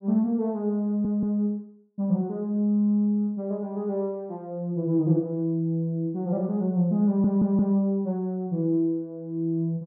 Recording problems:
stutter; at 1 s and at 7 s

